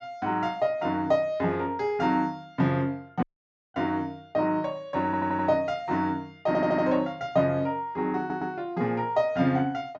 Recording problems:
low-pass filter; nothing above 8 kHz
audio cutting out; at 3 s for 0.5 s
stutter; at 5 s, at 6.5 s and at 8 s

